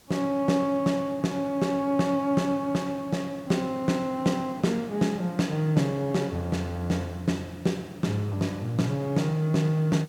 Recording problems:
background hiss; slope -3 dB per octave, SNR 28 dB

